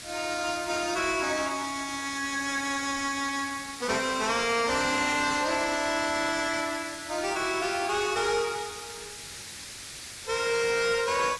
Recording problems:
lossy codec; AAC, log-spectral distance 9 dB, nothing above 11 kHz
distorted audio; soft clipping, signal-to-distortion ratio 10 dB
hiss; slope 0 dB per octave, SNR 12 dB

